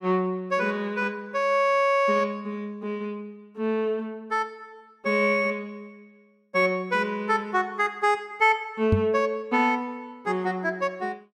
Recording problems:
microphone thump; at 9 s; peak +6 dB vs average level

